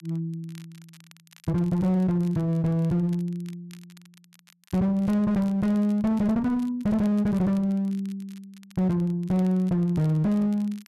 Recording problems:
distortion; hard clipping, uneven, signal-to-distortion ratio 9 dB
crackling; vinyl, SNR 30 dB

